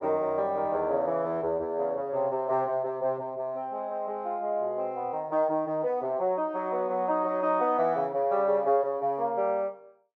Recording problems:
none

